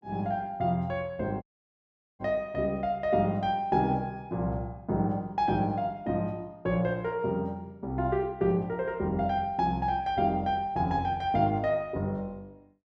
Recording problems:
dropout; at 1.5 s for 1 s

